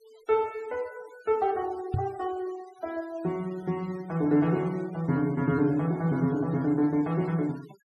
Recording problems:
denoising artefacts; signal-to-artefact ratio 24 dB
microphone thump; at 2 s; peak +3 dB vs average level

